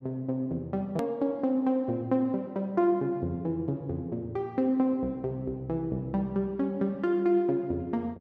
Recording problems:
click at an edit; at 1 s

